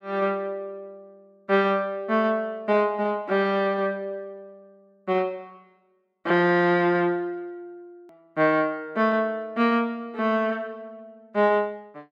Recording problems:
click at an edit; at 8 s

